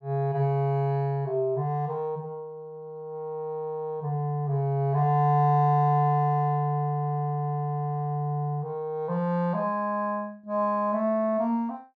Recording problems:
none

